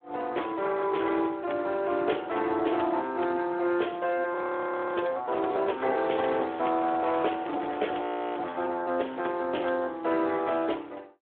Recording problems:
phone line; 280 Hz to 3.5 kHz, Speex
audio freezing; at 4.5 s for 0.5 s and at 8 s
crackling; at 5.5 s and from 6 to 8.5 s; loose cable, SNR 19 dB

